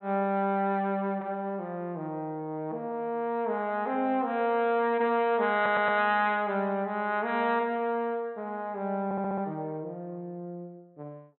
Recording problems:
treble cut off; nothing above 4.1 kHz
audio stuttering; at 5.5 s and at 9 s

